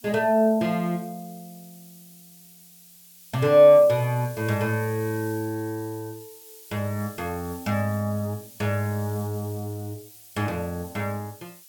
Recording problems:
background hiss; slope +4 dB per octave, SNR 21 dB

